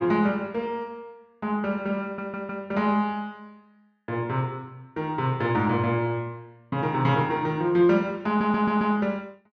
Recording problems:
audio stuttering; at 2 s and at 8.5 s

